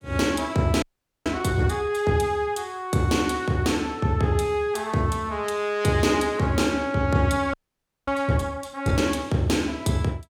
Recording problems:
audio freezing; at 1 s and at 7.5 s for 0.5 s

